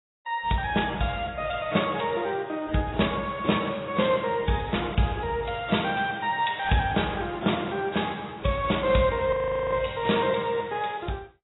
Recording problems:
codec artefacts; AAC, then AAC, log-spectral distance 6 dB, nothing above 3.8 kHz
frozen audio; at 9.5 s

